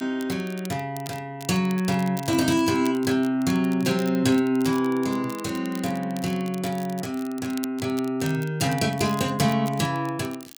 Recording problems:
crackle; vinyl, SNR 19 dB

